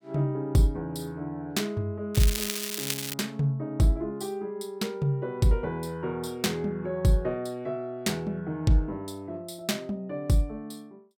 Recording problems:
crackling; from 2 to 3 s; loose cable, SNR 2 dB

